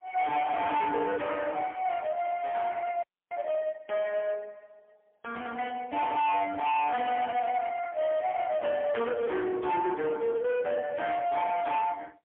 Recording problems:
phone line; 300 Hz to 3.4 kHz, AMR-NB, then MP3
distorted audio; hard clipping, uneven, signal-to-distortion ratio 7 dB
audio freezing; at 3 s

